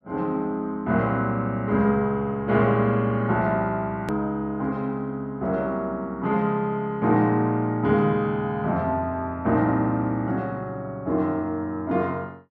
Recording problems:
edit click; at 4 s

